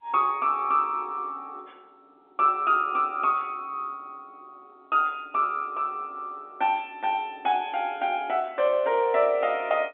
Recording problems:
telephone audio; 220 Hz to 3.5 kHz, G.711

